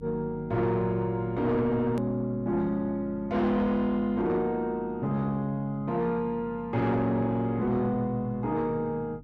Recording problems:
distorted audio; soft clipping, signal-to-distortion ratio 11 dB
mains hum; 50 Hz, harmonics up to 300 Hz, SNR 20 dB
hard cut with a click; at 2 s

